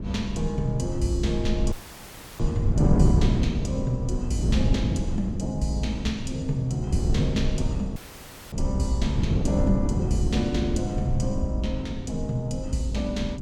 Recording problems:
rumble; below 110 Hz, SNR 5 dB
wind on the microphone; below 220 Hz, SNR 1 dB
audio cutting out; at 1.5 s for 0.5 s and at 8 s for 0.5 s

